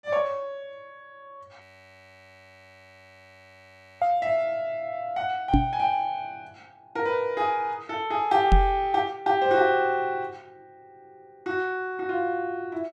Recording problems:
frozen audio; at 1.5 s for 2.5 s
microphone thump; at 5.5 s and at 8.5 s; peak +8 dB vs average level

